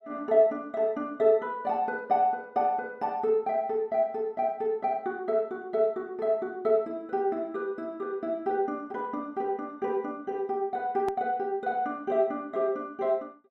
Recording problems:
hard cut with a click; at 11 s

